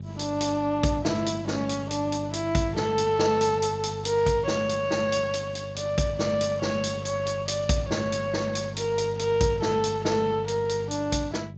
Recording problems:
lossy compression; Speex, log-spectral distance 5 dB
electrical hum; 50 Hz, harmonics up to 450 Hz, SNR 10 dB

